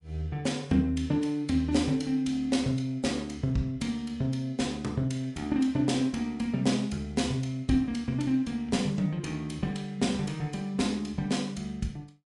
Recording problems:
codec artefacts; MP3, log-spectral distance 2 dB

